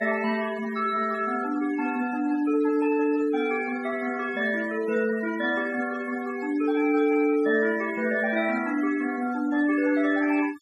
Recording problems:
denoising artefacts; signal-to-artefact ratio 17 dB

